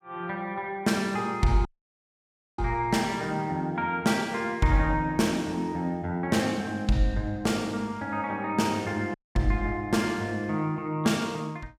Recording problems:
dropout; at 1.5 s for 1 s and at 9 s

